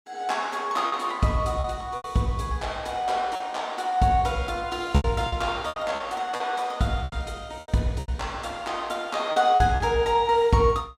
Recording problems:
packet loss; 8% of the sound replaced, filled with repeated pitch periods

